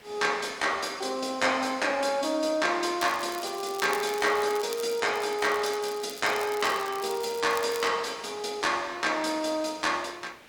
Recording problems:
background hiss; SNR 24 dB
crackle; from 3 to 8 s; loose cable, SNR 15 dB

